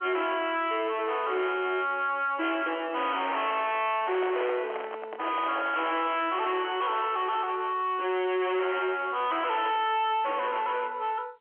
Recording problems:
telephone audio; 280 Hz to 3.3 kHz, G.711
distortion; soft clipping, signal-to-distortion ratio 7 dB
handling noise; from 4 to 6 s; peak 0 dB vs average level

